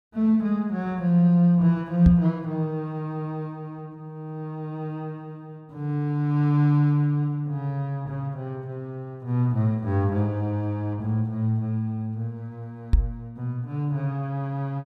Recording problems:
microphone thump; at 2 s and at 13 s; peak +9 dB vs average level

